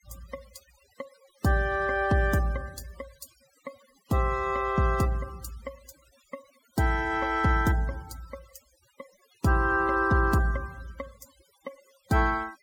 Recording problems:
denoising artefacts; signal-to-artefact ratio 25 dB

